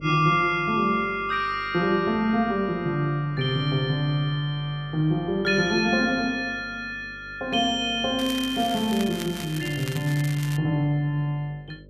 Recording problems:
hum; 50 Hz, harmonics up to 600 Hz, SNR 22 dB
crackle; from 8 to 11 s; loose cable, SNR 14 dB

